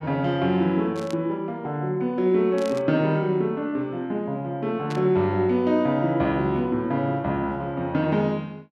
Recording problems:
burst of static; at 1 s, at 2.5 s and at 5 s; peak -10 dB vs average level

